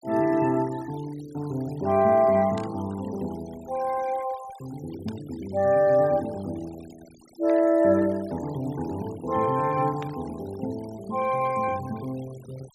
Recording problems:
denoising artefacts; signal-to-artefact ratio 23 dB
static burst; 4 times, first at 2.5 s; peak -12 dB vs average level

